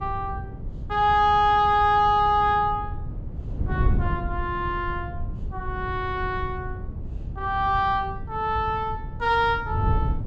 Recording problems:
wind on the microphone; below 120 Hz, SNR 9 dB

